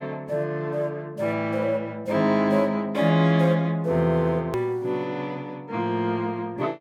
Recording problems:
hard cut with a click; at 4.5 s

